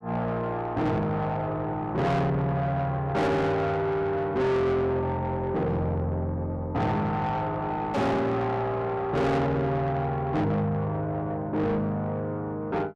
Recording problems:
distorted audio; soft clipping, signal-to-distortion ratio 7 dB
burst of static; at 8 s; peak -11 dB vs average level

